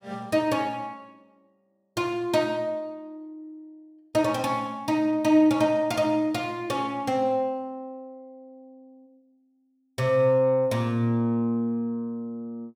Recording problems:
none

